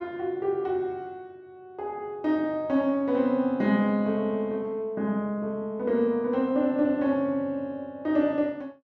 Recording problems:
none

